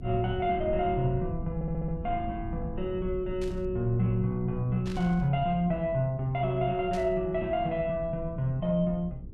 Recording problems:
hum; 60 Hz, harmonics up to 480 Hz, SNR 20 dB
low-frequency rumble; below 110 Hz, SNR 12 dB
stutter; at 1.5 s
static burst; at 3.5 s, at 5 s and at 7 s; peak -12 dB vs average level

